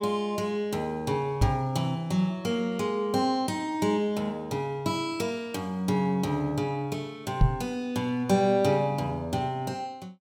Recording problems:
microphone bump; at 1.5 s and at 7.5 s; peak +9 dB vs average level

